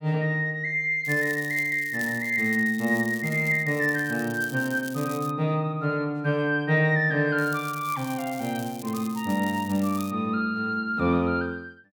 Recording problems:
crackling; from 1 to 5.5 s and from 7.5 to 10 s; loose cable, SNR 17 dB

